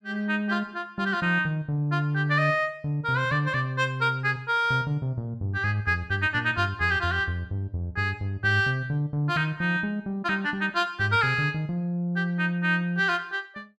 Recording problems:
none

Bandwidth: 13 kHz